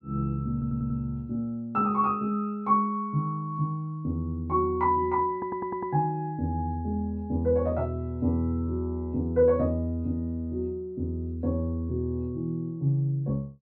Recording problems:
stutter; at 0.5 s and at 5.5 s

